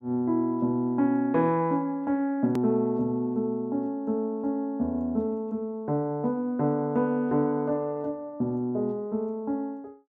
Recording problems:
click at an edit; at 2.5 s

